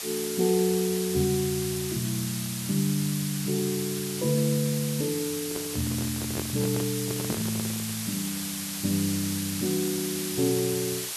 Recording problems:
background hiss; slope +2 dB per octave, SNR 4 dB
handling noise; from 5.5 to 8 s; peak -1 dB vs average level

